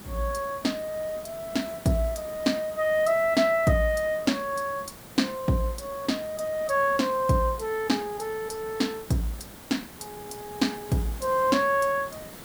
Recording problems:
hiss; slope -4 dB per octave, SNR 16 dB

